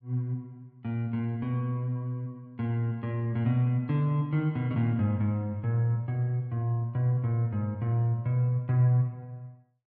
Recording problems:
none

